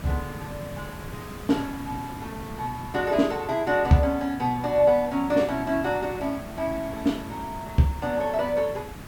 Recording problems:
hiss; slope -5 dB per octave, SNR 14 dB

